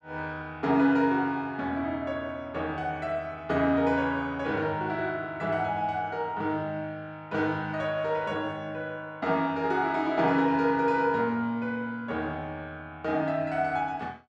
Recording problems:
none

